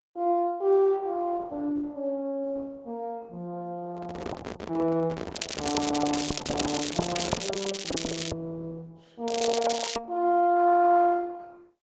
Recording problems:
low-pass filter; nothing above 8 kHz
codec artefacts; Opus, log-spectral distance 7 dB
handling noise; from 4 to 7.5 s; peak -3 dB vs average level
crackle; from 5.5 to 8.5 s and at 9.5 s; loose cable, SNR 6 dB

